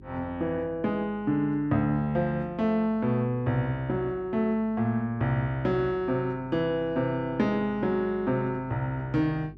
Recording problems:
hum; 50 Hz, harmonics up to 400 Hz, SNR 23 dB

